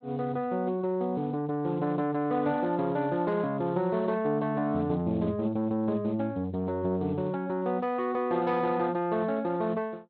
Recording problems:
lossy compression; Speex, log-spectral distance 2 dB

